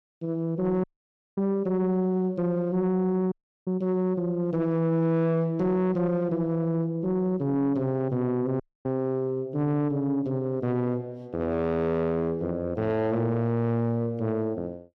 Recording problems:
distortion; soft clipping, signal-to-distortion ratio 12 dB
dropout; at 1 s for 0.5 s, at 3.5 s and at 8.5 s

